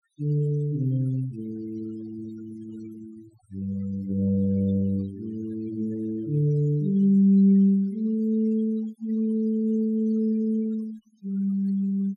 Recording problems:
denoising artefacts; signal-to-artefact ratio 26 dB

